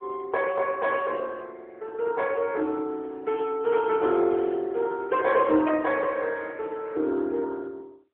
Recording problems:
telephone audio; 260 Hz to 3.4 kHz, AMR-NB

